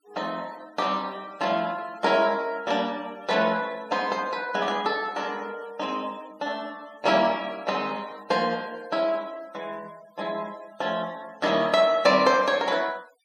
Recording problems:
denoising artefacts; signal-to-artefact ratio 25 dB

